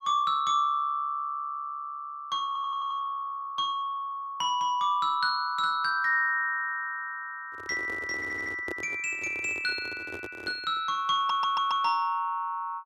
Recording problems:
stutter; at 2.5 s, at 8 s and at 11 s
microphone handling noise; from 7.5 to 11 s; peak -5 dB vs average level

